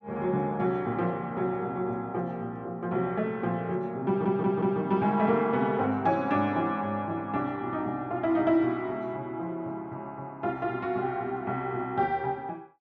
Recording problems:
audio stuttering; at 4 s

